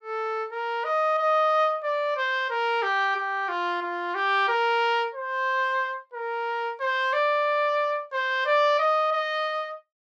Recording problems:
none

